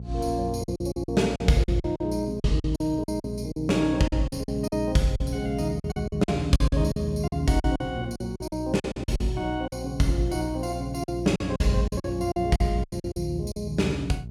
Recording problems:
hum; 60 Hz, harmonics up to 420 Hz, SNR 10 dB
packet loss; 14% of the sound replaced, filled with silence

